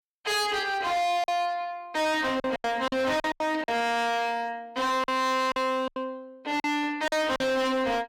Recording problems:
distortion; hard clipping, signal-to-distortion ratio 7 dB
lost packets; 8% of the sound replaced, filled with silence

